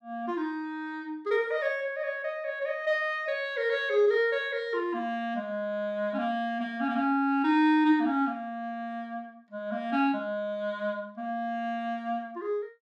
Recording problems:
none

